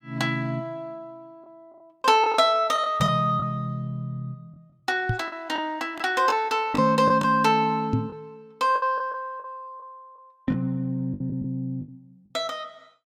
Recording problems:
lost packets; 6% of the sound replaced, filled with the last packet
knock on the microphone; at 5 s and at 8 s; peak +4 dB vs average level

